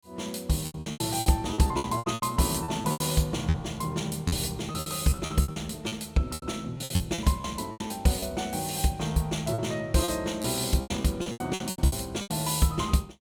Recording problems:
lost packets; 16% of the sound replaced, filled with repeated pitch periods

